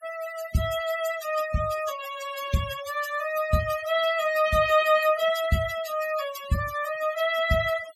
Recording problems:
noise reduction artefacts; signal-to-artefact ratio 13 dB

